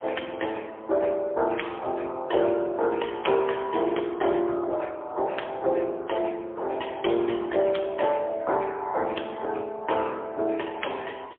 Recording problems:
telephone audio; 300 Hz to 3.3 kHz, AMR-NB, then MP3

